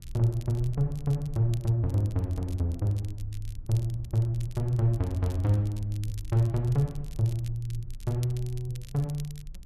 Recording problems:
low-frequency rumble; below 56 Hz, strongest tone 20 Hz, SNR 15 dB
crackle; vinyl, SNR 24 dB

